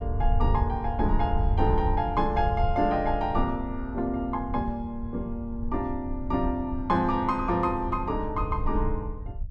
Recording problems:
rumble; below 80 Hz, SNR 5 dB

